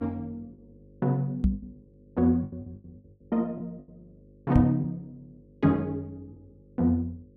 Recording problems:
electrical hum; 50 Hz, harmonics up to 550 Hz, SNR 27 dB
lost packets; 9% of the sound replaced, filled with the last packet
microphone thump; at 1.5 s and at 4.5 s; peak +8 dB vs average level

